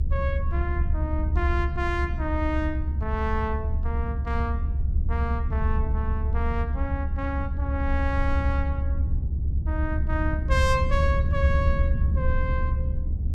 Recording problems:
rumble; below 74 Hz, SNR -4 dB

